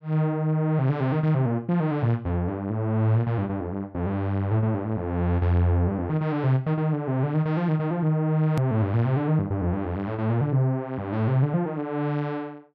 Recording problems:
click at an edit; at 8.5 s

